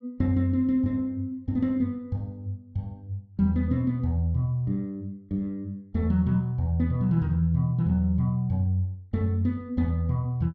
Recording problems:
none

